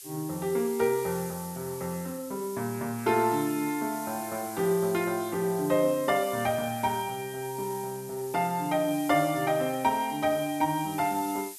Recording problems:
hiss; slope +6 dB per octave, SNR 13 dB

